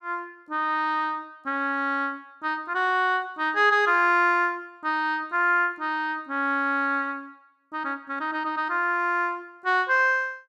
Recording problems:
none

